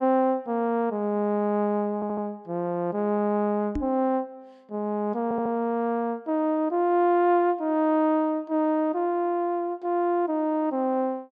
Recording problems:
stutter; at 2 s and at 5 s
microphone bump; at 4 s; peak -1 dB vs average level

